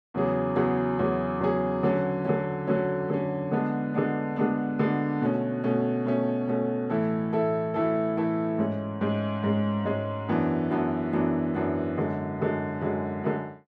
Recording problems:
none

